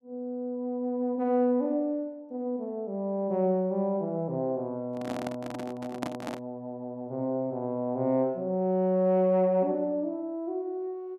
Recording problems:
microphone handling noise; from 5 to 6.5 s; peak 0 dB vs average level

